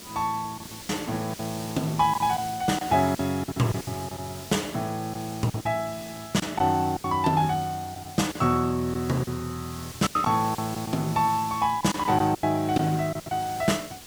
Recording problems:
hiss; SNR 14 dB
packet loss; 8% of the sound replaced, filled with silence

